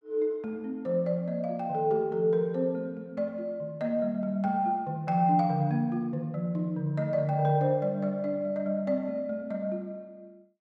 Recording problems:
none

